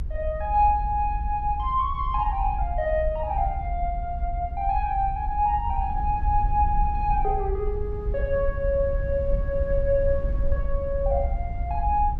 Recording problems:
low-frequency rumble; below 62 Hz, SNR 4 dB

